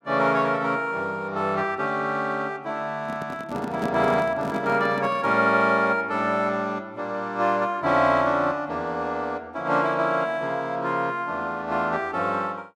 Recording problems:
microphone handling noise; from 3 to 5.5 s; peak -2 dB vs average level

